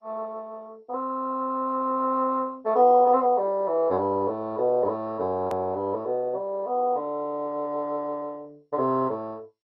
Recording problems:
lossy compression; MP2, log-spectral distance 2 dB
click at an edit; at 5.5 s

